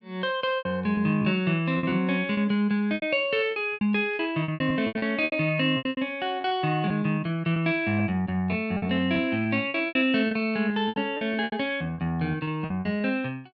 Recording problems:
lost packets; 13% of the sound replaced, filled with repeated pitch periods

